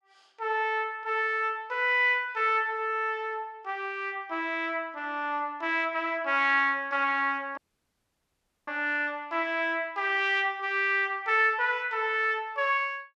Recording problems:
dropout; at 7.5 s for 1 s

